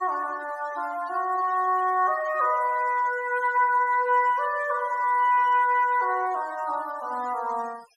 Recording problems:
noise reduction artefacts; signal-to-artefact ratio 21 dB

